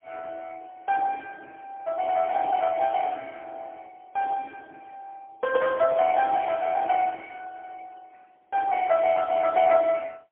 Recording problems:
phone line; 340 Hz to 3.2 kHz, AMR-NB, then MP3

